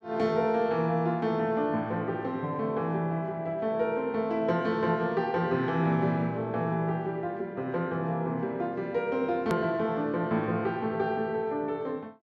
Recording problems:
hard cut with a click; at 9.5 s

